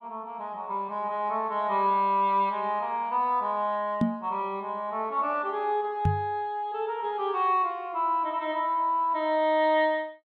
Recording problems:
knock on the microphone; at 4 s and at 6 s; peak +6 dB vs average level

